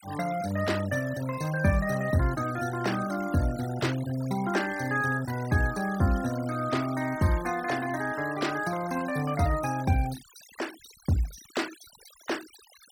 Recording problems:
denoising artefacts; signal-to-artefact ratio 16 dB

